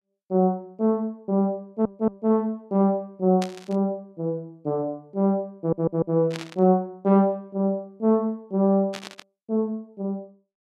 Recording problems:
stutter; at 1.5 s and at 5.5 s
static burst; at 3.5 s, at 6.5 s and at 9 s; peak -5 dB vs average level

